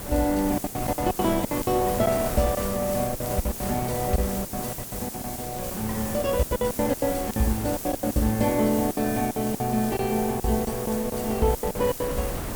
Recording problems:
background hiss; SNR 8 dB
wind on the microphone; below 740 Hz, SNR 11 dB
crackle; vinyl, SNR 29 dB
packet loss; 16% of the sound replaced, filled with silence

